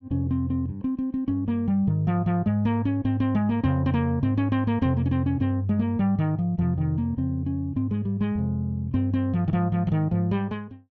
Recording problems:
none

